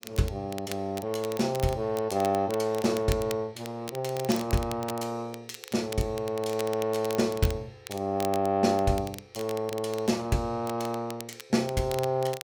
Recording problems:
crackling; vinyl, SNR 14 dB

